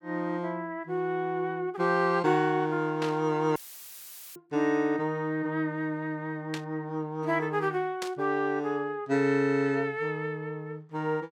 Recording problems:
static burst; at 3 s, at 6.5 s and at 8 s; peak -3 dB vs average level
audio cutting out; at 3.5 s for 1 s; filled with static

